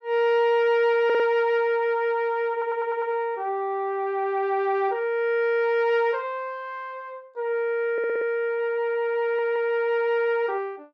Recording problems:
audio stuttering; 4 times, first at 1 s

